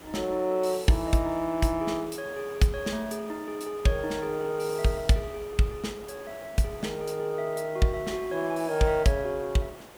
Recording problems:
hiss; slope -6 dB per octave, SNR 18 dB

